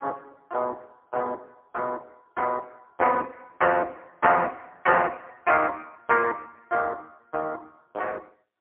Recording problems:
phone line; 300 Hz to 3.3 kHz, AMR-NB, then MP3

